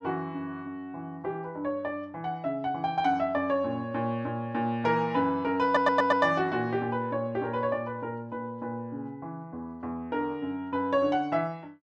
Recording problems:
stutter; at 5.5 s

